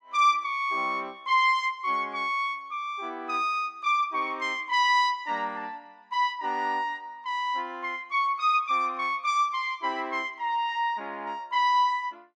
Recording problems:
none

